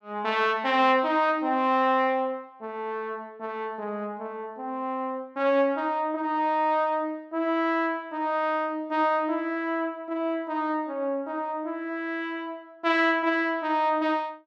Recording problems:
none

